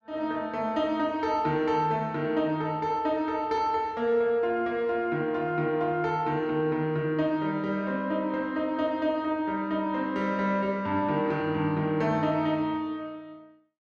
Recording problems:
none

